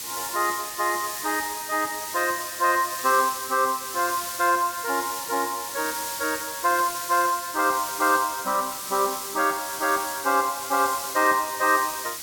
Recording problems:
hiss; slope +2 dB per octave, SNR 7 dB

